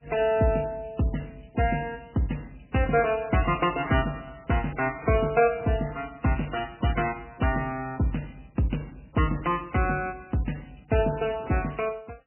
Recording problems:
lossy compression; MP3, log-spectral distance 7 dB, nothing above 2.8 kHz

